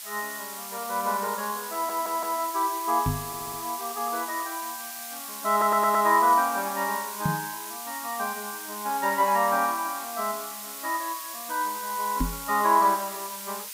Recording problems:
background hiss; slope +5 dB per octave, SNR 9 dB
stutter; at 1.5 s, at 3.5 s and at 5.5 s
knock on the microphone; at 3 s, at 7.5 s and at 12 s; peak +3 dB vs average level

